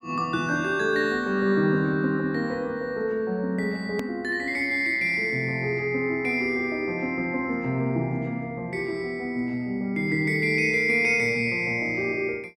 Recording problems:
hard cut with a click; at 4 s

